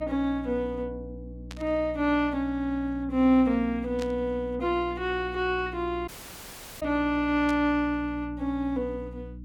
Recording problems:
hum; 60 Hz, harmonics up to 300 Hz, SNR 14 dB
static burst; at 1.5 s, at 4 s and at 7.5 s; peak -9 dB vs average level
dropout; at 6 s for 0.5 s

